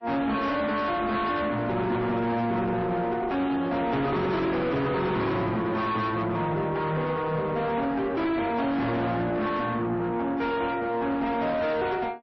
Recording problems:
lossy codec; MP3, then AAC, log-spectral distance 2 dB, nothing above 5 kHz
distortion; soft clipping, signal-to-distortion ratio 7 dB

